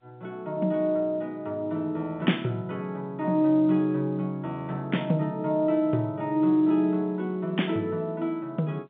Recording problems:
telephone audio; 170 Hz to 3.6 kHz, G.711

